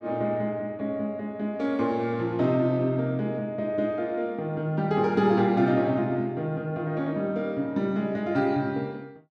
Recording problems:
none

